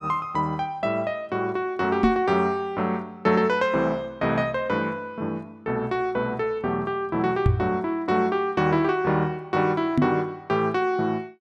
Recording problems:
microphone thump; at 2 s, at 7.5 s and at 10 s; peak +7 dB vs average level

